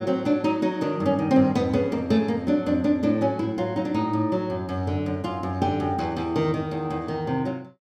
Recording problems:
none

